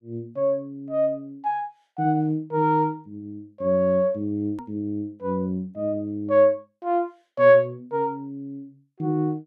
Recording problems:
click at an edit; at 4.5 s

